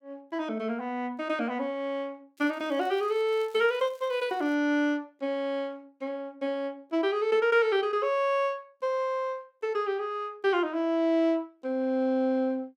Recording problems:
crackle; from 2.5 to 4.5 s; loose cable, SNR 30 dB

